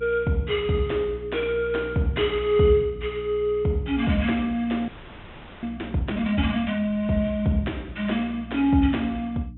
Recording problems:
low-pass filter; nothing above 3.7 kHz
hum; 60 Hz, harmonics up to 300 Hz, SNR 18 dB
audio freezing; at 5 s for 1 s

